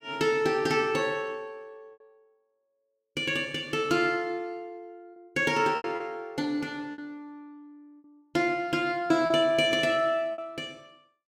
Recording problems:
packet loss; 4% of the sound replaced, filled with repeated pitch periods

